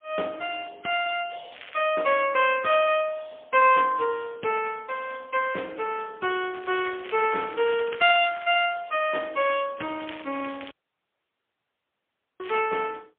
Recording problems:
phone line; 320 Hz to 3.2 kHz, AMR-NB, then MP3
crackle; at 1.5 s, from 6.5 to 8.5 s and from 10 to 13 s; loose cable, SNR 19 dB
audio cutting out; at 11 s for 1.5 s

